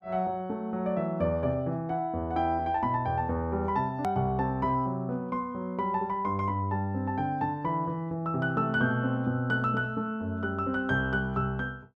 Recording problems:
hard cut with a click; at 4 s

